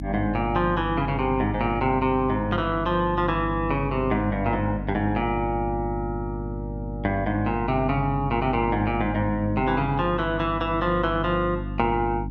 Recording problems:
electrical hum; 50 Hz, harmonics up to 300 Hz, SNR 7 dB

